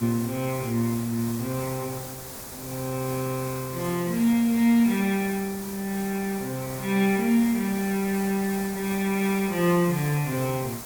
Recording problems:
hiss; SNR 11 dB

